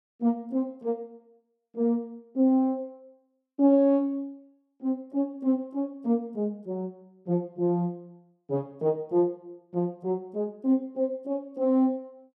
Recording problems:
none

